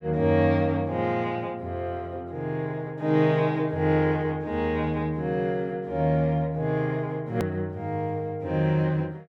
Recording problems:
click at an edit; at 7.5 s

